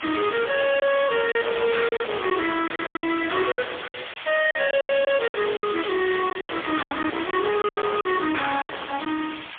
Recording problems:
telephone audio; 280 Hz to 3.4 kHz, AMR-NB, then MP3
distorted audio; hard clipping, uneven, signal-to-distortion ratio 5 dB
hiss; SNR 11 dB
lost packets; 13% of the sound replaced, filled with silence

